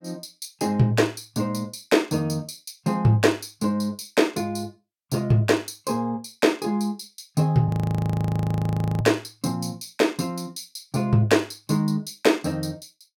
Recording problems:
audio freezing; at 7.5 s for 1.5 s

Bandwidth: 17 kHz